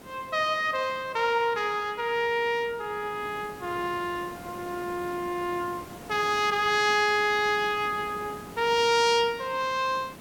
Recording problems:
hiss; slope -6 dB per octave, SNR 18 dB

